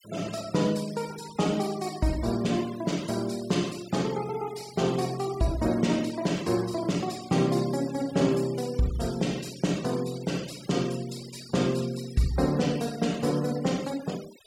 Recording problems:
noise reduction artefacts; signal-to-artefact ratio 17 dB

